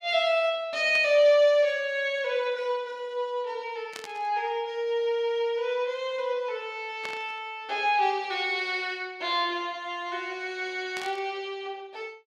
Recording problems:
static burst; 4 times, first at 1 s; peak -7 dB vs average level

